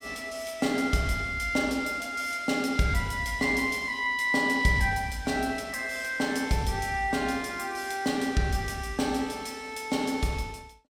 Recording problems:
none

